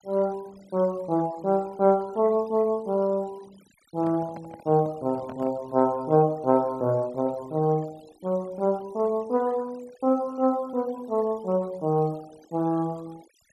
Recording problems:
noise reduction artefacts; signal-to-artefact ratio 26 dB
microphone handling noise; from 4 to 5.5 s; peak -12 dB vs average level

